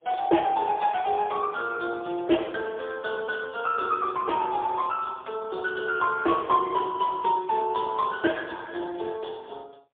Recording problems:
phone line; 280 Hz to 3.4 kHz, AMR-NB, then MP3

